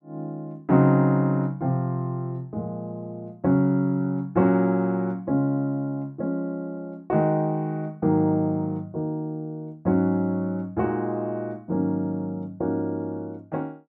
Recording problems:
none

